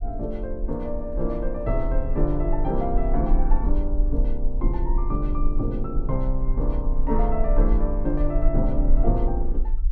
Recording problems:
low-frequency rumble; below 40 Hz, strongest tone 20 Hz, SNR -1 dB

